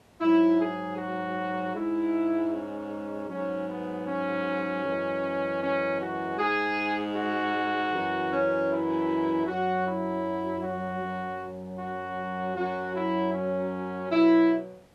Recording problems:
hiss; slope -6 dB per octave, SNR 30 dB

